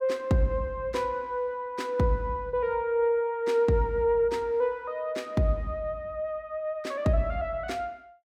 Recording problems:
none

